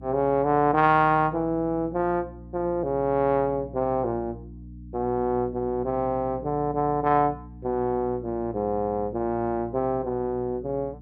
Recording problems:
hum; 60 Hz, harmonics up to 300 Hz, SNR 18 dB

